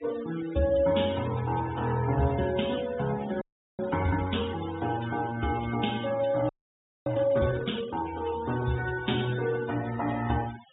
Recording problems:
treble cut off; nothing above 4 kHz
noise reduction artefacts; signal-to-artefact ratio 14 dB
frozen audio; at 3.5 s and at 6.5 s for 0.5 s

